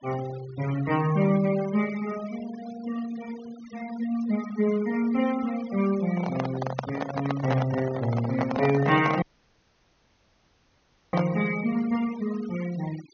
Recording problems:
treble cut off; nothing above 6.5 kHz
denoising artefacts; signal-to-artefact ratio 16 dB
microphone handling noise; from 6 to 11 s; peak +2 dB vs average level
audio cutting out; at 9 s for 2 s

